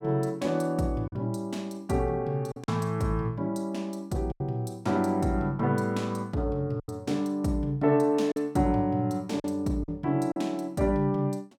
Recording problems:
packet loss; 4% of the sound replaced, filled with silence

